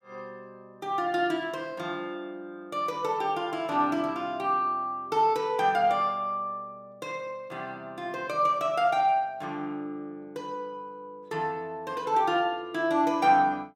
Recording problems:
none

